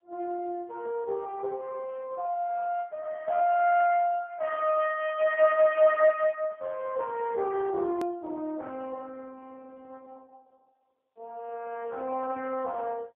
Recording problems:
telephone audio; 280 Hz to 3.1 kHz, AMR-NB, then MP3
click at an edit; at 8 s

